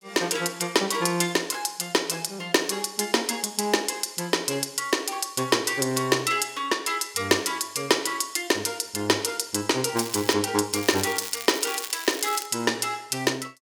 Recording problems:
crackle; at 10 s and from 11 to 12 s; loose cable, SNR 11 dB

